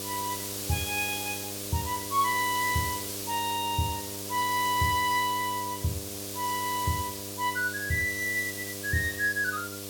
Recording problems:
electrical hum; 50 Hz, harmonics up to 1.3 kHz, SNR 12 dB
background hiss; SNR 6 dB

